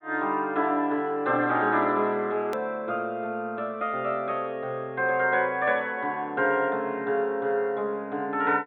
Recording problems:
treble cut off; nothing above 4 kHz
hard cut with a click; at 2.5 s

